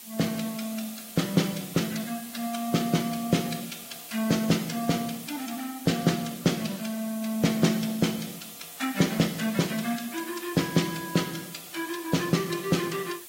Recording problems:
codec artefacts; AAC, log-spectral distance 9 dB, nothing above 15.5 kHz
hiss; SNR 12 dB

